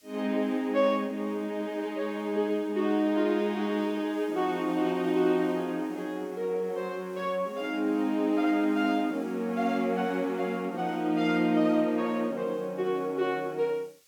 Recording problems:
background hiss; SNR 29 dB

